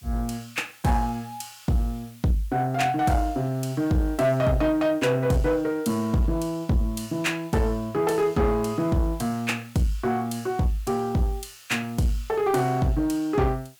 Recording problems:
distortion; soft clipping, signal-to-distortion ratio 12 dB
hiss; slope +3 dB per octave, SNR 27 dB

